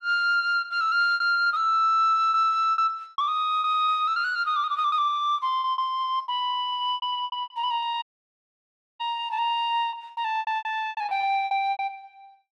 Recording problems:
packet loss; 14% of the sound replaced, filled with repeated pitch periods
dropout; at 8 s for 1 s

